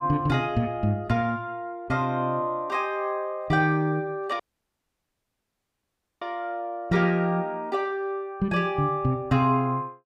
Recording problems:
audio cutting out; at 4.5 s for 2 s

